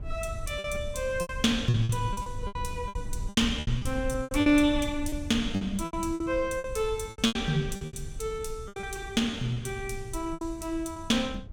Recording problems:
rumble; below 86 Hz, SNR 11 dB
lost packets; 14% of the sound replaced, filled with repeated pitch periods

